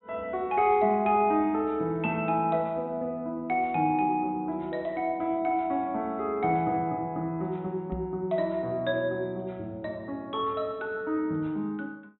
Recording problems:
treble cut off; nothing above 3.9 kHz
microphone bump; at 8 s; peak -3 dB vs average level

